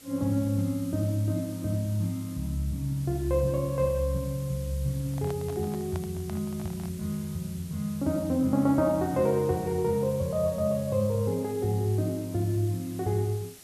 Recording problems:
background hiss; SNR 19 dB
handling noise; from 5 to 7 s; peak -9 dB vs average level

